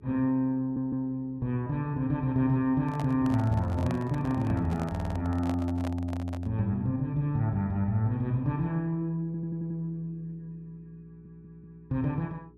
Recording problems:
mains hum; 60 Hz, harmonics up to 420 Hz, SNR 26 dB
stutter; 4 times, first at 0.5 s
handling noise; from 3 to 6.5 s; peak -5 dB vs average level

